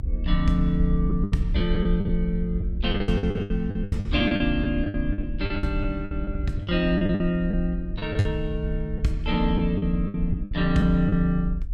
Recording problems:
low-frequency rumble; below 60 Hz, SNR 6 dB
wind noise; below 150 Hz, SNR 15 dB
lost packets; 14% of the sound replaced, filled with the last packet

